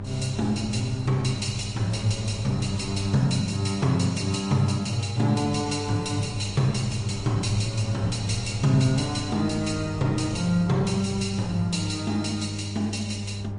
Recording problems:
lossy codec; MP3, log-spectral distance 3 dB, nothing above 10.1 kHz
hum; 50 Hz, harmonics up to 800 Hz, SNR 8 dB
wind noise; below 300 Hz, SNR 15 dB

